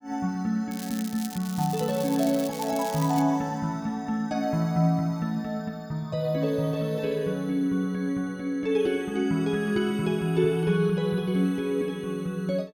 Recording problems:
crackling; from 0.5 to 3 s; loose cable, SNR 13 dB

